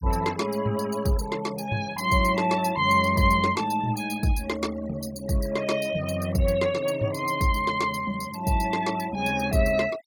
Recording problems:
denoising artefacts; signal-to-artefact ratio 17 dB

